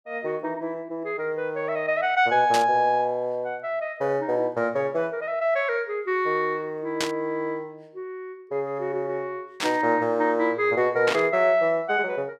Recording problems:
burst of static; 4 times, first at 2.5 s; peak +2 dB vs average level

